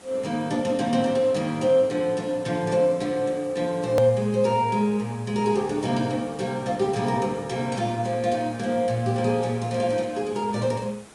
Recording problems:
lossy compression; Vorbis, log-spectral distance 4 dB
hiss; slope -4 dB per octave, SNR 23 dB
edit click; at 4 s

